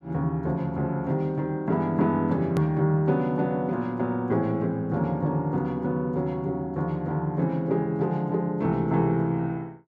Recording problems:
click at an edit; at 2.5 s

